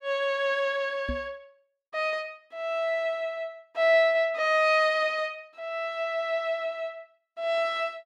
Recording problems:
knock on the microphone; at 1 s; peak -3 dB vs average level

